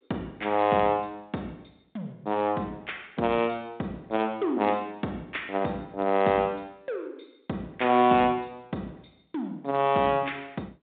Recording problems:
phone line; 130 Hz to 3.8 kHz, G.726

